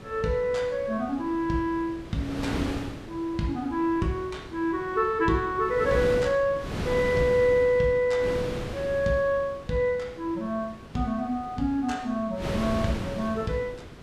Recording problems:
wind noise; below 710 Hz, SNR 10 dB

